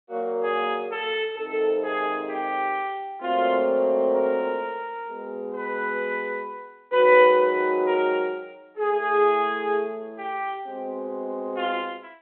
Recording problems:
telephone audio; 280 Hz to 3.5 kHz, G.726

